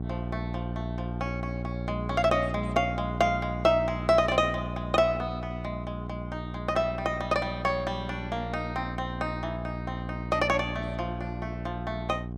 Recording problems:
hum; 60 Hz, harmonics up to 780 Hz, SNR 6 dB

